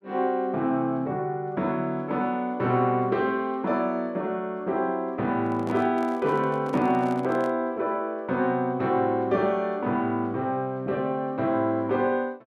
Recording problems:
handling noise; from 5.5 to 7.5 s; peak -9 dB vs average level

